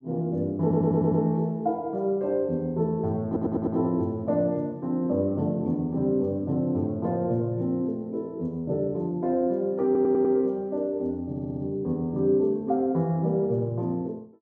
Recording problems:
stutter; 4 times, first at 0.5 s

